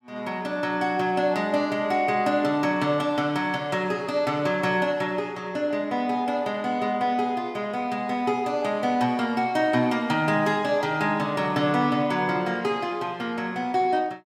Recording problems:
none

